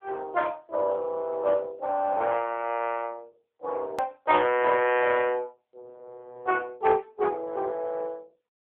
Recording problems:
phone line; 340 Hz to 3.4 kHz, AMR-NB
hard cut with a click; at 4 s

